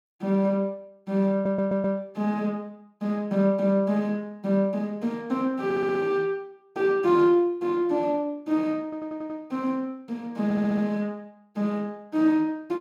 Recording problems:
stutter; 4 times, first at 1.5 s

